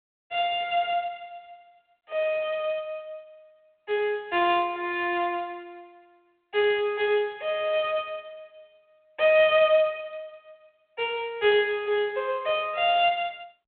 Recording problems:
telephone audio; 370 Hz to 3.4 kHz, G.726

